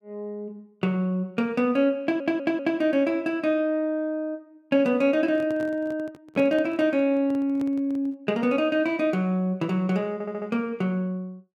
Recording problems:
audio stuttering; at 2 s and at 10 s
microphone handling noise; from 5 to 8 s; peak -8 dB vs average level

